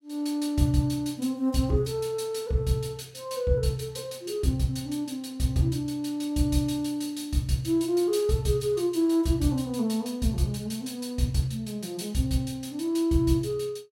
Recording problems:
none

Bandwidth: 16 kHz